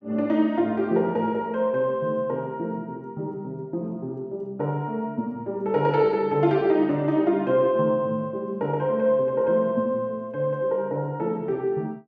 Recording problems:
none

